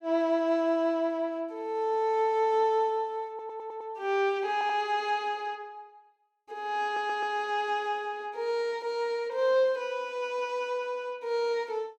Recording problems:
audio stuttering; at 3.5 s, at 4.5 s and at 7 s

